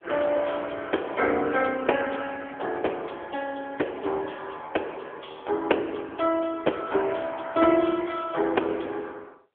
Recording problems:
phone line; 280 Hz to 3.3 kHz, AMR-NB

